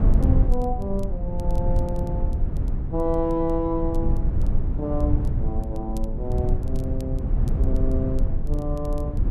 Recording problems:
rumble; below 82 Hz, SNR -3 dB
crackle; vinyl, SNR 27 dB

